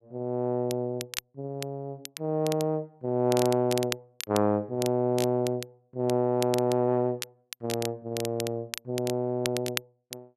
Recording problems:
crackling; vinyl, SNR 10 dB

